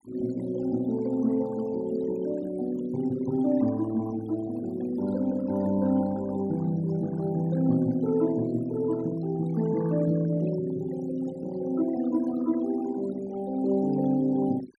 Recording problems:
noise reduction artefacts; signal-to-artefact ratio 19 dB

